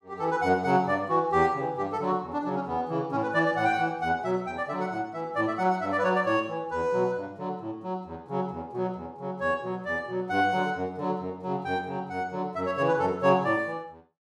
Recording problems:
none

